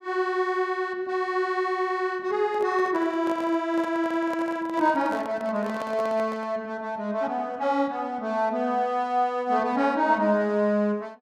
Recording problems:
handling noise; from 2.5 to 6.5 s; peak -7 dB vs average level

